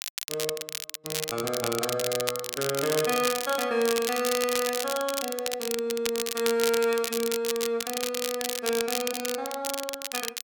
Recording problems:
crackling; vinyl, SNR 3 dB

